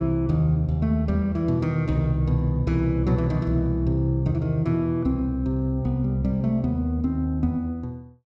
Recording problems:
none

